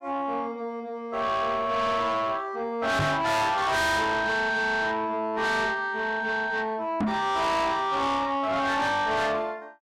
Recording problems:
distortion; soft clipping, signal-to-distortion ratio 6 dB
knock on the microphone; at 3 s and at 7 s; peak +5 dB vs average level

